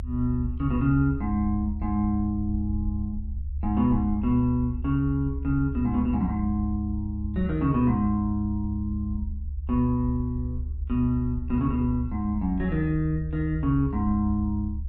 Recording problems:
rumble; below 74 Hz, strongest tone 72 Hz, SNR 7 dB

